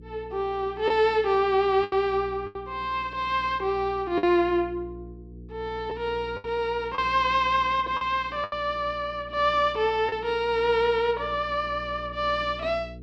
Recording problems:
hum; 60 Hz, harmonics up to 480 Hz, SNR 19 dB
lost packets; 4% of the sound replaced, filled with the last packet

